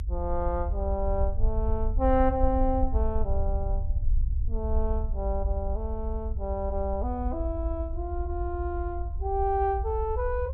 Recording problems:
low-frequency rumble; below 70 Hz, SNR 0 dB

